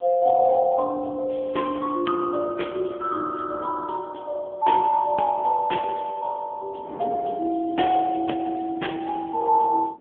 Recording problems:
phone line; 220 Hz to 3.4 kHz, AMR-NB
wind noise; below 540 Hz, SNR 18 dB

